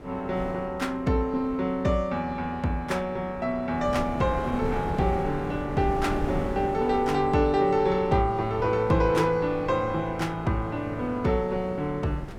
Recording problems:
wind noise; below 440 Hz, SNR 11 dB

